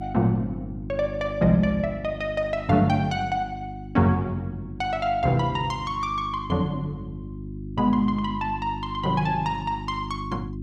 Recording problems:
mains hum; 50 Hz, harmonics up to 350 Hz, SNR 11 dB

